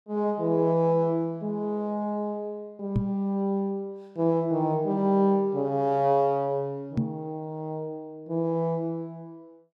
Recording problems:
microphone bump; at 3 s and at 7 s; peak +5 dB vs average level

